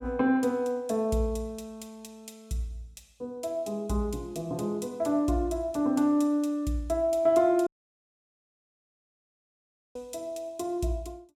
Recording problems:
dropout; at 7.5 s for 2.5 s

